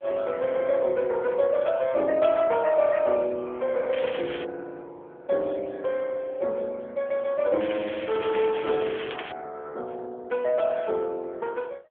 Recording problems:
telephone audio; 280 Hz to 3.3 kHz, AMR-NB
crackle; at 4 s and from 7.5 to 9.5 s; loose cable, SNR 12 dB

